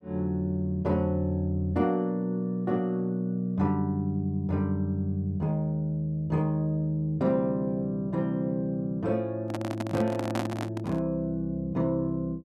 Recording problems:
microphone handling noise; from 9.5 to 11 s; peak 0 dB vs average level

